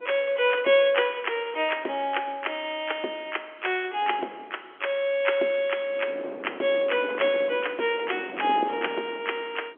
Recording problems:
phone line; 280 Hz to 3.3 kHz, G.711
wind on the microphone; below 630 Hz, SNR 13 dB

